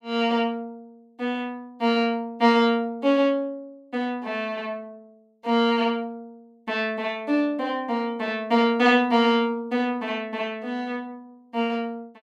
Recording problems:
none

